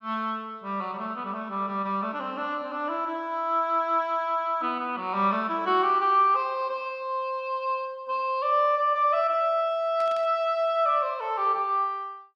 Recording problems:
static burst; at 10 s; peak -15 dB vs average level

